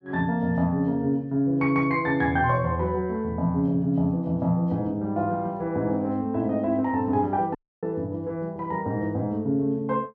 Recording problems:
dropout; at 7.5 s

